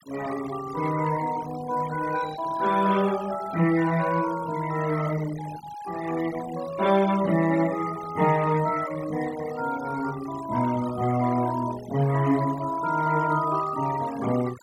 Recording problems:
noise reduction artefacts; signal-to-artefact ratio 16 dB

